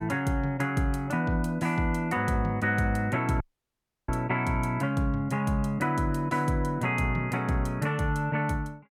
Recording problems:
audio cutting out; at 3.5 s for 0.5 s

